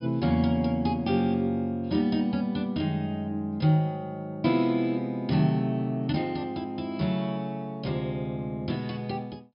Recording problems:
low-pass filter; nothing above 5.5 kHz

